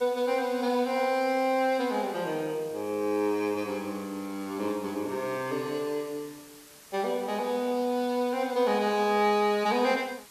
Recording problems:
hiss; slope 0 dB per octave, SNR 21 dB

